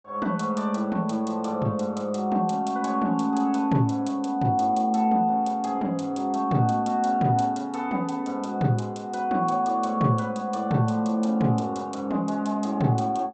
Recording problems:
treble missing; nothing above 8 kHz

